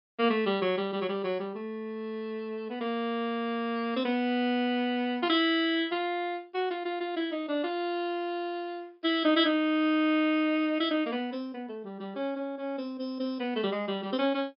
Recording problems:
low-pass filter; nothing above 5.2 kHz

